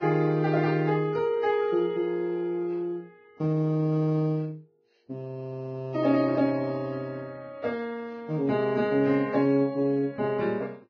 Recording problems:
lossy compression; Vorbis, log-spectral distance 2 dB, nothing above 6.3 kHz

